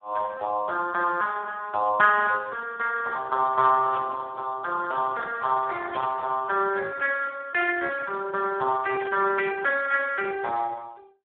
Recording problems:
phone line; 300 Hz to 2.8 kHz, Speex
burst of static; 4 times, first at 4 s; peak -11 dB vs average level

